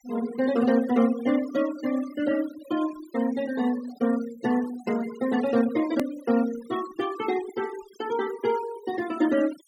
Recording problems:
noise reduction artefacts; signal-to-artefact ratio 16 dB
hard cut with a click; at 6 s

